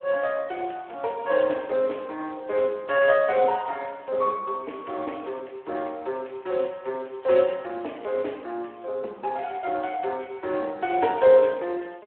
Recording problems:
telephone audio; 280 Hz to 3.2 kHz, Speex

